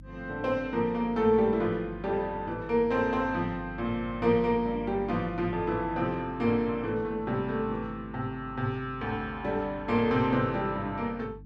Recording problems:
electrical hum; 50 Hz, harmonics up to 300 Hz, SNR 17 dB

